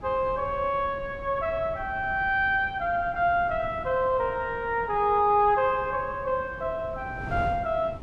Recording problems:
wind on the microphone; below 330 Hz, SNR 16 dB

